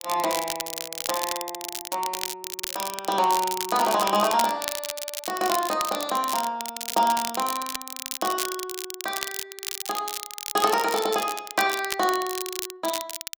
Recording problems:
crackling; vinyl, SNR 5 dB

